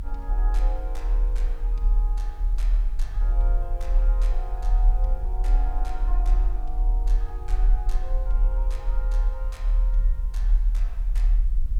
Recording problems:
hiss; slope -5 dB per octave, SNR 17 dB
low-frequency rumble; below 40 Hz, strongest tone 38 Hz, SNR -16 dB

